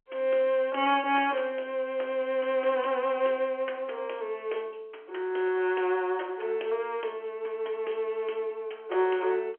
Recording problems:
phone line; 300 Hz to 3.3 kHz, G.711

